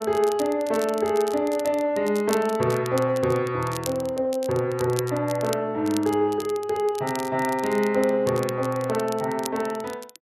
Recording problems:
crackling; vinyl, SNR 16 dB

